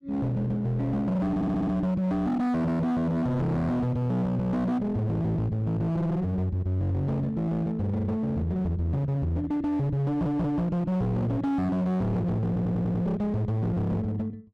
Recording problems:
distorted audio; hard clipping, uneven, signal-to-distortion ratio 7 dB
audio stuttering; at 1.5 s, at 10 s and at 12 s

